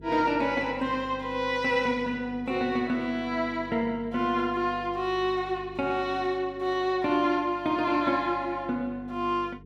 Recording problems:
electrical hum; 50 Hz, harmonics up to 450 Hz, SNR 20 dB

